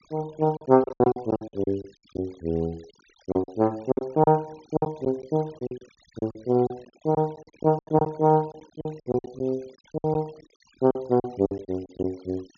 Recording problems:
low-pass filter; nothing above 6.9 kHz
noise reduction artefacts; signal-to-artefact ratio 27 dB
lost packets; 16% of the sound replaced, filled with silence

